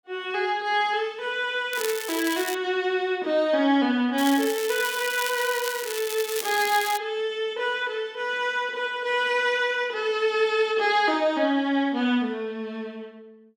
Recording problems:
crackling; at 1.5 s and from 4 to 7 s; loose cable, SNR 8 dB

